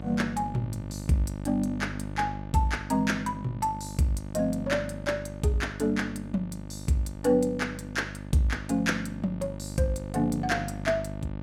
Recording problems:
hum; 50 Hz, harmonics up to 1.2 kHz, SNR 9 dB

